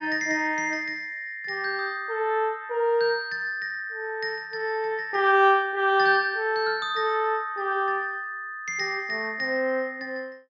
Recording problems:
low-pass filter; nothing above 8 kHz

